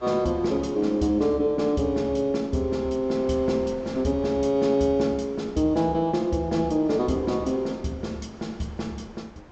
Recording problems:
low-pass filter; nothing above 8 kHz
wind on the microphone; below 940 Hz, SNR 23 dB

